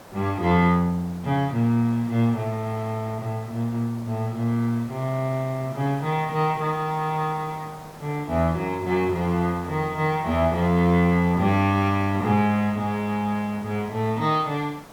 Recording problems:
background hiss; SNR 20 dB

